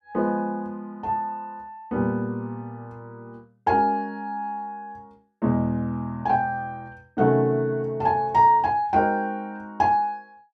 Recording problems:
none

